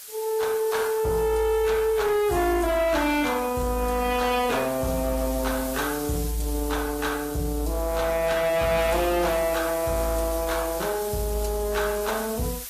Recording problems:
lossy codec; AAC, log-spectral distance 9 dB, nothing above 14.7 kHz
distortion; soft clipping, signal-to-distortion ratio 10 dB
hiss; slope +2 dB per octave, SNR 11 dB

